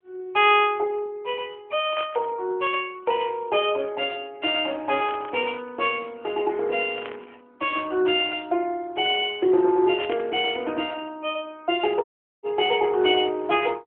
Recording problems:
phone line; 280 Hz to 3.3 kHz, AMR-NB
static burst; 4 times, first at 2 s; peak -7 dB vs average level
dropout; at 12 s

